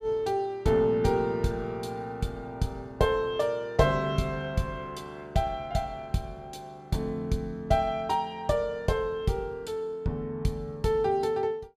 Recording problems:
none

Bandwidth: 15.5 kHz